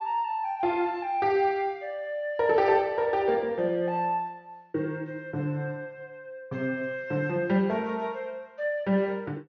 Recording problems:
treble cut off; nothing above 6.5 kHz

